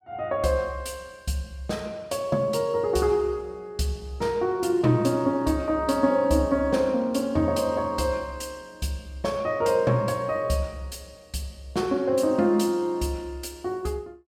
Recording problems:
none

